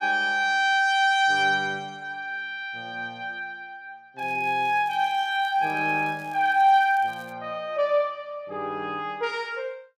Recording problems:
crackle; from 4 to 7.5 s; loose cable, SNR 29 dB

